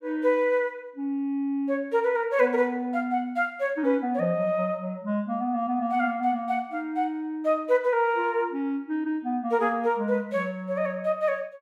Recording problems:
none

